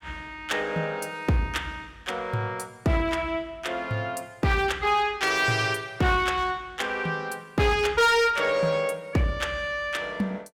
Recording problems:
distortion; hard clipping, uneven, signal-to-distortion ratio 11 dB

